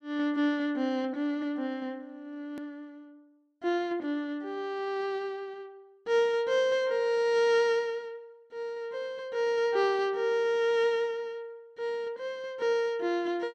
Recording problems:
hard cut with a click; at 2.5 s

